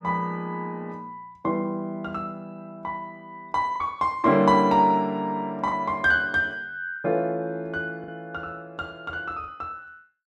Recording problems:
lost packets; 2% of the sound replaced, filled with the last packet

